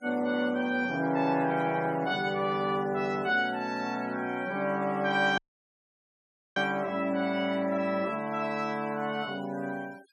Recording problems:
denoising artefacts; signal-to-artefact ratio 24 dB
dropout; at 5.5 s for 1 s

